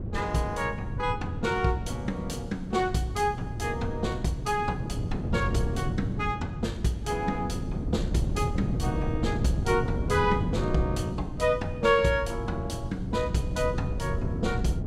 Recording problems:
wind on the microphone; below 190 Hz, SNR 4 dB

